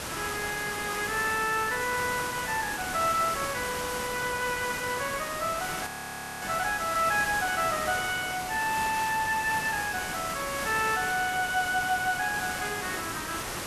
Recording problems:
background hiss; slope -3 dB per octave, SNR 5 dB
audio freezing; at 6 s for 0.5 s

